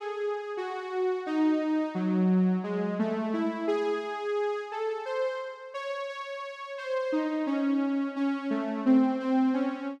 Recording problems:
none

